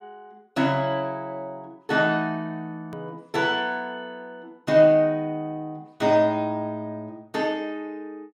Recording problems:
hard cut with a click; at 3 s

